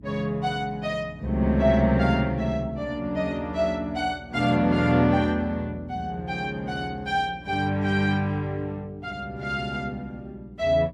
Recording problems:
hum; 60 Hz, harmonics up to 300 Hz, SNR 21 dB

